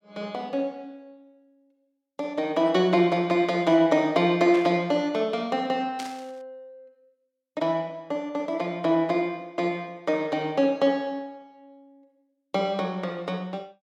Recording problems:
burst of static; at 4.5 s and at 6 s; peak -8 dB vs average level

